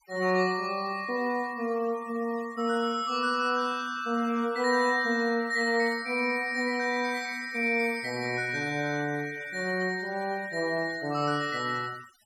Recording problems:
noise reduction artefacts; signal-to-artefact ratio 20 dB

